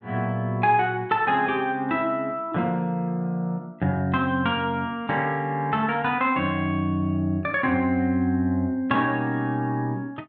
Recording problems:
none

